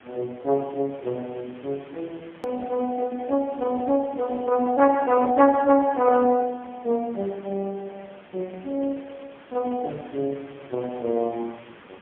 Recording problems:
phone line; 150 Hz to 2.5 kHz, AMR-NB, then MP3
hiss; SNR 24 dB
click at an edit; at 2.5 s

